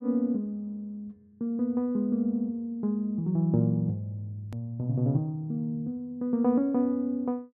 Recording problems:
edit click; at 4.5 s

